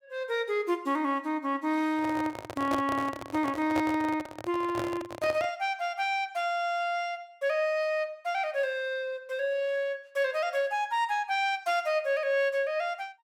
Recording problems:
handling noise; from 2 to 5.5 s; peak +1 dB vs average level

